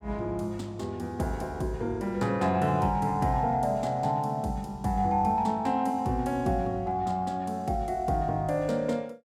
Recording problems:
none

